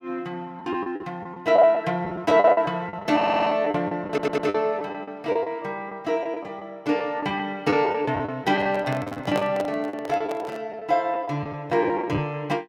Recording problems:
lost packets; 13% of the sound replaced, filled with the last packet
audio stuttering; at 3 s and at 4 s
handling noise; from 8.5 to 11 s; peak 0 dB vs average level

